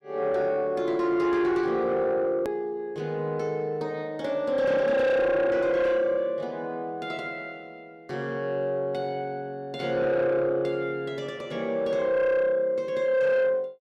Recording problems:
distortion; soft clipping, signal-to-distortion ratio 10 dB
edit click; at 2.5 s

